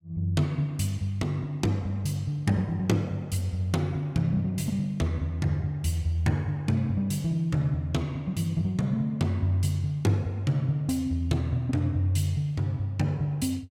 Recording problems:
none

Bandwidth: 16.5 kHz